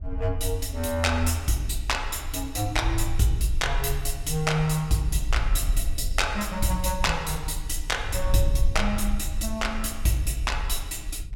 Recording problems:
wind noise; below 54 Hz, SNR 5 dB

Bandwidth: 17 kHz